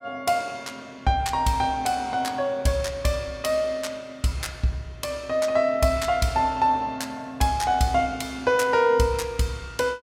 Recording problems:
none

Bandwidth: 17 kHz